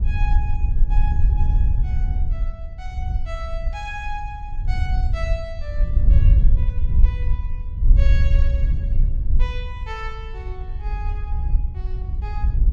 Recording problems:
wind noise; below 64 Hz, SNR -14 dB

